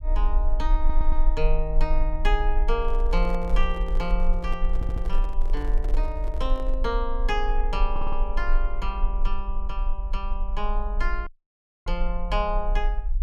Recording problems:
rumble; below 36 Hz, strongest tone 18 Hz, SNR -3 dB
audio stuttering; at 1 s, at 4.5 s and at 8 s
microphone handling noise; from 3 to 7 s; peak -4 dB vs average level
dropout; at 11 s for 0.5 s

